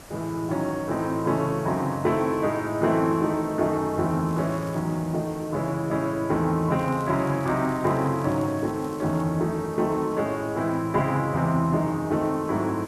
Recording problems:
background hiss; SNR 19 dB
crackle; at 4.5 s and from 7 to 9 s; loose cable, SNR 27 dB

